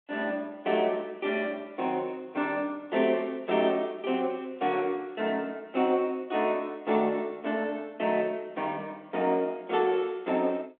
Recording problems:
phone line; 240 Hz to 3.7 kHz, G.726

